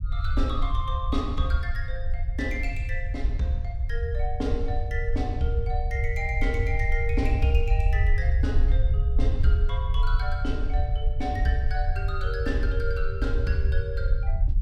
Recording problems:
rumble; below 72 Hz, SNR -4 dB

